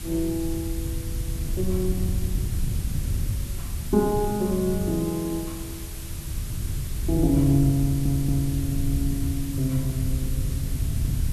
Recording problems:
background hiss; slope +1 dB per octave, SNR 13 dB
wind noise; below 110 Hz, SNR 4 dB
stutter; at 8 s

